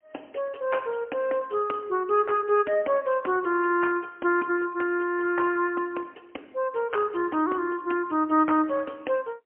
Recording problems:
phone line; 240 Hz to 3.1 kHz, AMR-NB, then MP3

